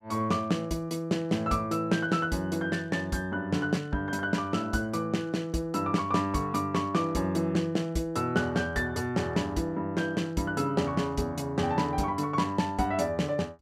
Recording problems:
none

